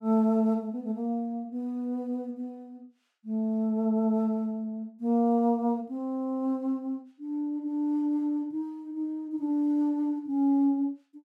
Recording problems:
none

